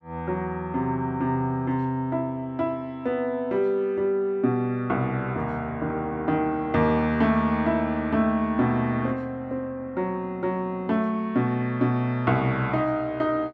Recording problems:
none

